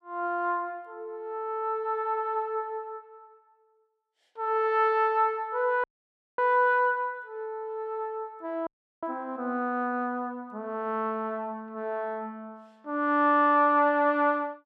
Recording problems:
dropout; at 6 s for 0.5 s and at 8.5 s

